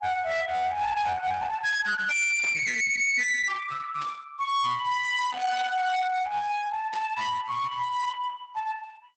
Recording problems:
lossy compression; Opus, log-spectral distance 4 dB, nothing above 7.1 kHz
distortion; hard clipping, uneven, signal-to-distortion ratio 5 dB
burst of static; at 2.5 s, at 4 s and at 7 s; peak -11 dB vs average level

